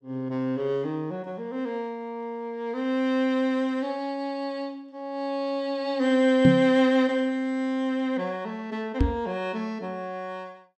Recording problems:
knock on the microphone; at 6.5 s and at 9 s; peak +9 dB vs average level

